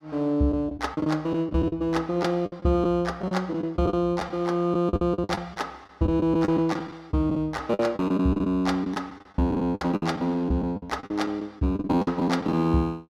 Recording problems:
lost packets; 13% of the sound replaced, filled with the last packet

